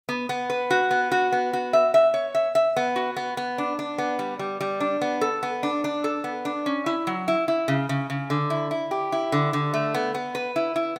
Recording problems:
none

